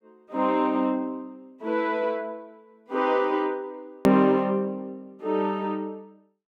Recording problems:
hard cut with a click; at 4 s

